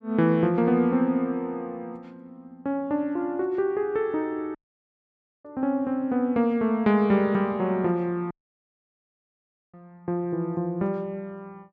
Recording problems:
dropout; at 4.5 s for 1 s and at 8.5 s for 1.5 s

